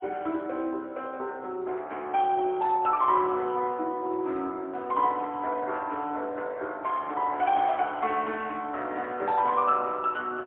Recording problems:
phone line; 260 Hz to 3.6 kHz, AMR-NB, then MP3

